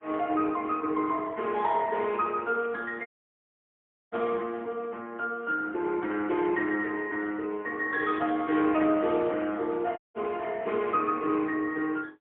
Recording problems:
telephone audio; 260 Hz to 3.8 kHz, AMR-NB, then MP3
dropout; at 3 s for 1 s and at 10 s

